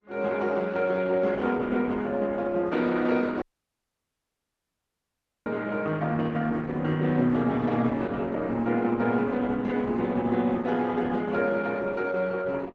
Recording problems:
lossy compression; Opus, log-spectral distance 3 dB
audio cutting out; at 3.5 s for 2 s

